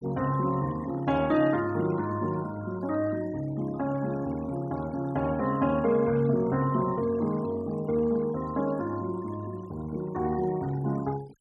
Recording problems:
noise reduction artefacts; signal-to-artefact ratio 20 dB

